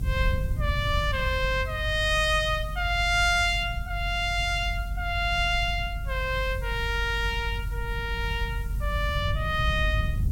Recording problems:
hiss; slope +1 dB per octave, SNR 26 dB
low-frequency rumble; below 94 Hz, strongest tone 48 Hz, SNR 5 dB

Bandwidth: 16.5 kHz